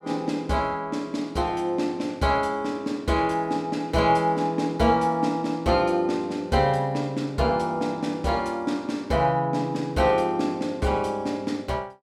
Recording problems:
none

